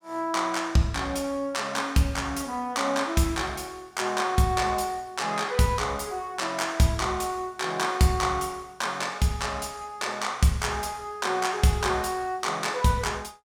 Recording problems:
none

